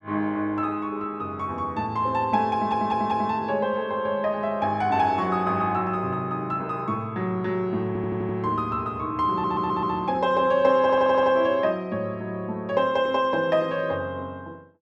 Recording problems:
audio stuttering; 4 times, first at 2.5 s

